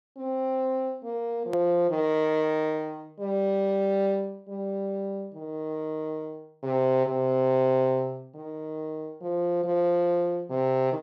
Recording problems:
edit click; at 1.5 s

